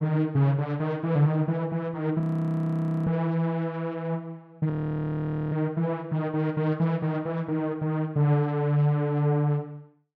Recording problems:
frozen audio; at 2 s for 1 s and at 4.5 s for 1 s

